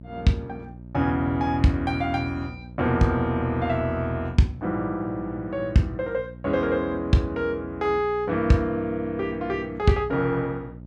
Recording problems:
hum; 60 Hz, harmonics up to 660 Hz, SNR 17 dB

